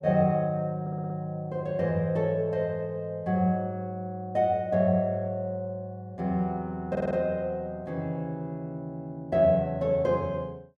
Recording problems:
stutter; at 1 s and at 7 s

